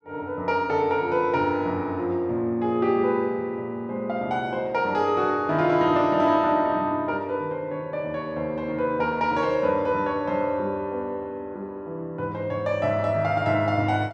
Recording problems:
none

